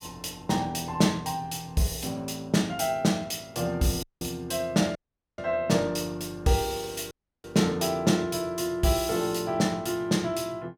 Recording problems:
audio cutting out; at 4 s, at 5 s and at 7 s

